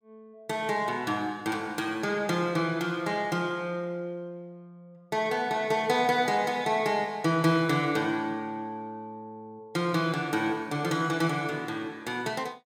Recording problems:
none

